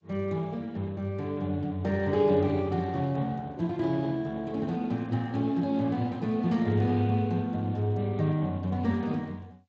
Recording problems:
codec artefacts; G.722, then Speex, log-spectral distance 2 dB

